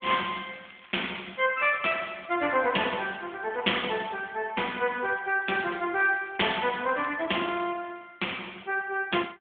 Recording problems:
phone line; 240 Hz to 3.6 kHz, AMR-NB
crackle; from 0.5 to 2.5 s, at 3.5 s and from 5 to 7.5 s; loose cable, SNR 24 dB

